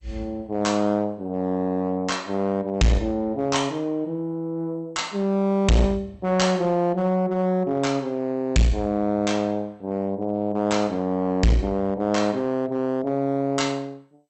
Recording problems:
lossy compression; MP2, log-spectral distance 2 dB, nothing above 8 kHz
distortion; hard clipping, uneven, signal-to-distortion ratio 6 dB

